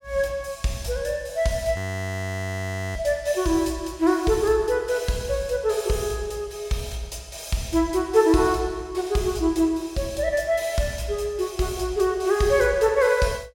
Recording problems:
frozen audio; at 2 s for 1 s

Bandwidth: 17 kHz